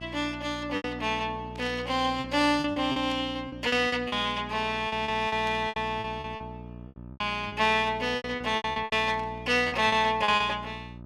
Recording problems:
hum; 60 Hz, harmonics up to 1.3 kHz, SNR 16 dB
packet loss; 13% of the sound replaced, filled with repeated pitch periods
static burst; 4 times, first at 1.5 s; peak -13 dB vs average level

